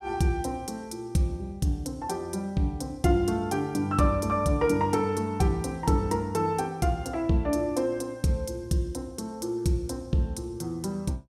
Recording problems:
none

